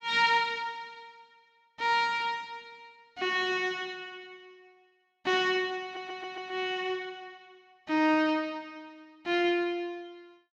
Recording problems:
stutter; at 6 s

